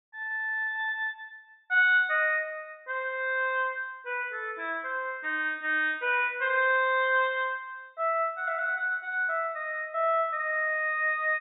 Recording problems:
treble cut off; nothing above 4 kHz

